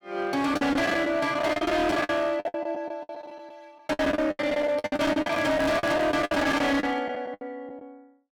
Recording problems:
distorted audio; hard clipping, signal-to-distortion ratio 7 dB
packet loss; 20% of the sound replaced, filled with the last packet
handling noise; from 5 to 6.5 s; peak -4 dB vs average level

